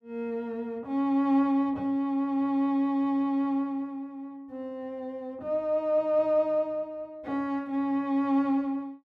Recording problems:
none

